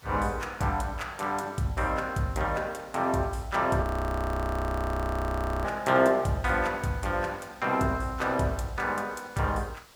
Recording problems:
background hiss; SNR 25 dB
frozen audio; at 4 s for 2 s

